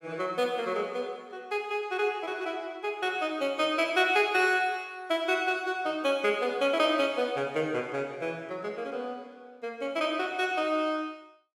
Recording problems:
none

